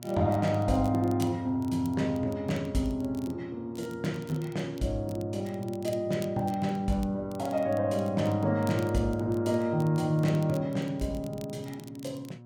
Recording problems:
mains hum; 60 Hz, harmonics up to 960 Hz, SNR 19 dB
crackle; vinyl, SNR 24 dB

